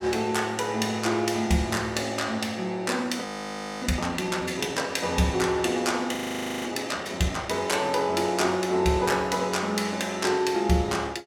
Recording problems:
audio freezing; at 3.5 s for 0.5 s and at 6 s

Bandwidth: 17.5 kHz